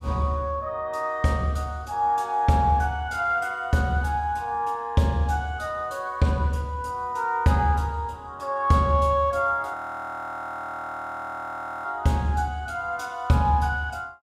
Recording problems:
audio freezing; at 9.5 s for 2 s

